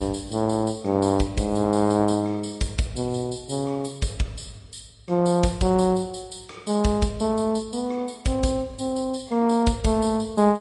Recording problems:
lossy codec; MP3, then Vorbis, log-spectral distance 4 dB, nothing above 11 kHz

